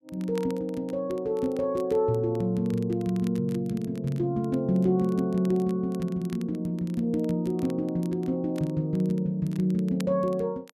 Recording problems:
crackling; vinyl, SNR 25 dB

